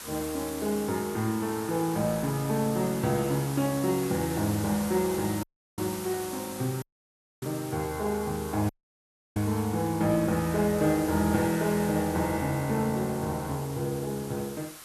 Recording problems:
hiss; SNR 12 dB
dropout; at 5.5 s, at 7 s for 0.5 s and at 8.5 s for 0.5 s

